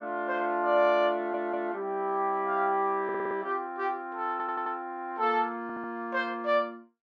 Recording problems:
stutter; 4 times, first at 1 s

